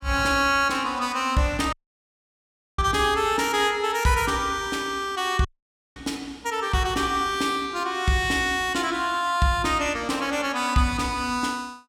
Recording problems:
dropout; at 1.5 s for 1 s and at 5.5 s for 0.5 s

